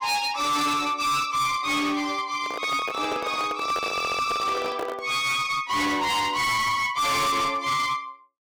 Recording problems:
distorted audio; hard clipping, signal-to-distortion ratio 6 dB
microphone handling noise; from 2.5 to 5 s; peak -4 dB vs average level
audio stuttering; at 4 s

